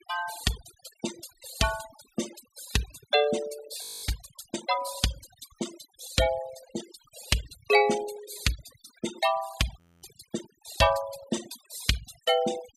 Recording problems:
noise reduction artefacts; signal-to-artefact ratio 12 dB
audio freezing; at 4 s and at 10 s

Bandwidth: 15.5 kHz